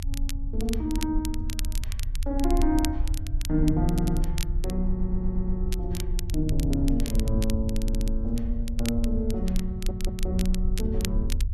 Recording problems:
rumble; below 60 Hz, strongest tone 28 Hz, SNR 1 dB
crackle; vinyl, SNR 11 dB
stutter; 4 times, first at 4 s

